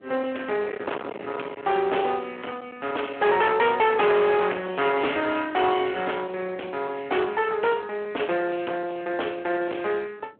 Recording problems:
telephone audio; 280 Hz to 3.3 kHz, Speex
distortion; hard clipping, uneven, signal-to-distortion ratio 7 dB
wind on the microphone; below 1.4 kHz, SNR 17 dB

